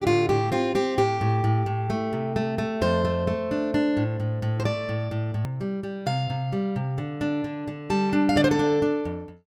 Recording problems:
edit click; at 5.5 s

